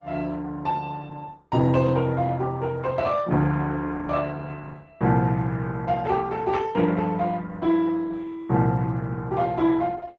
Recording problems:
lossy codec; Opus, log-spectral distance 3 dB, nothing above 7.3 kHz

